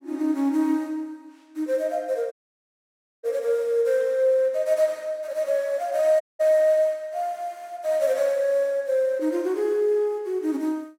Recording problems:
dropout; at 2.5 s for 1 s and at 6 s

